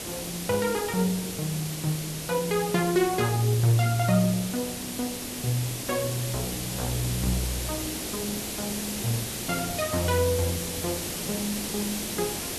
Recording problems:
background hiss; SNR 4 dB

